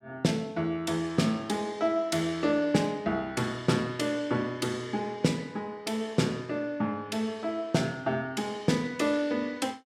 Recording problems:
none

